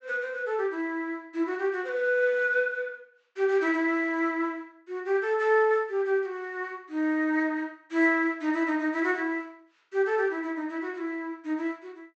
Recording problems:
treble missing; nothing above 8 kHz

